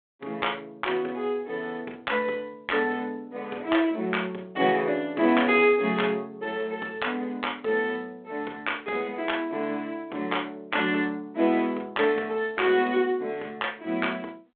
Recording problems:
phone line; 260 Hz to 3.5 kHz, G.726

